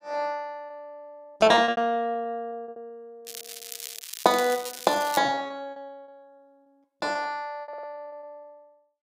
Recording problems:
lost packets; 19% of the sound replaced, filled with repeated pitch periods
crackle; from 3.5 to 5 s; loose cable, SNR 11 dB
stutter; at 7.5 s

